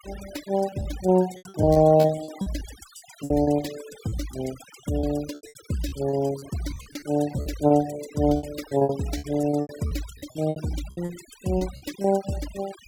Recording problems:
noise reduction artefacts; signal-to-artefact ratio 17 dB
packet loss; 16% of the sound replaced, filled with repeated pitch periods

